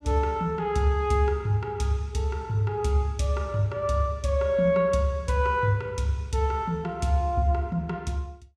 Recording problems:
none

